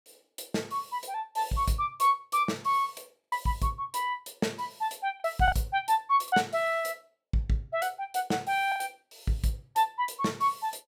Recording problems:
packet loss; 3% of the sound replaced, filled with the last packet

